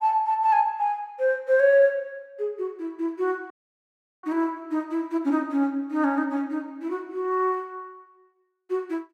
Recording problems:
dropout; at 3.5 s for 0.5 s

